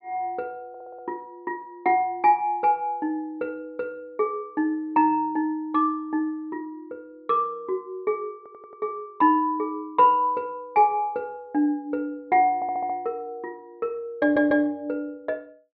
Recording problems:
low-pass filter; nothing above 5.5 kHz
stutter; 4 times, first at 0.5 s

